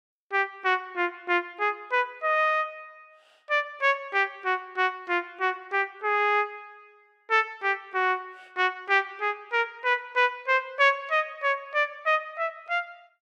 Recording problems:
none

